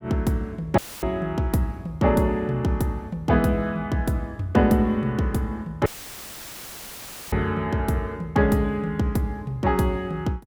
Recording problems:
dropout; at 1 s and at 6 s for 1.5 s; filled with static

